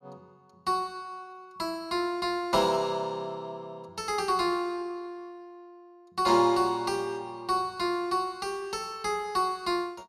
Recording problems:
none

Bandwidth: 14.5 kHz